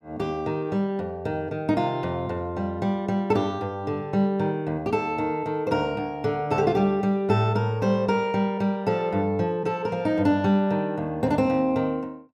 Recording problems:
none

